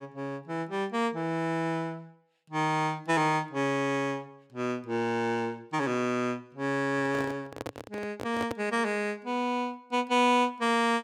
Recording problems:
microphone handling noise; from 7 to 8.5 s; peak -2 dB vs average level

